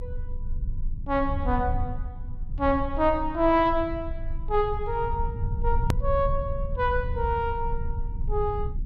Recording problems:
low-frequency rumble; below 72 Hz, strongest tone 22 Hz, SNR 6 dB
hard cut with a click; at 6 s

